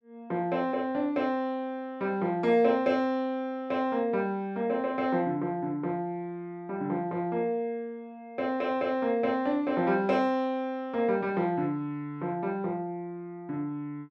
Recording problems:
none

